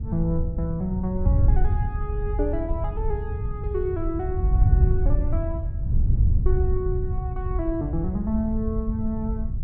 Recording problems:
wind on the microphone; below 90 Hz, SNR -4 dB

